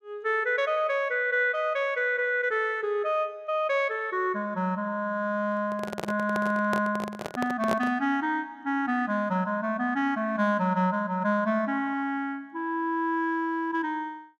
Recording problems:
handling noise; from 5.5 to 8 s; peak +2 dB vs average level

